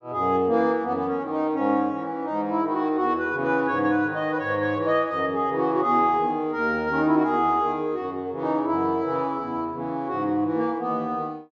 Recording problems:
treble missing; nothing above 8 kHz

